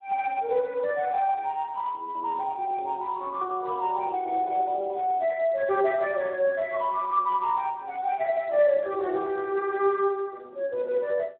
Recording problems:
telephone audio; 300 Hz to 3.5 kHz, Speex

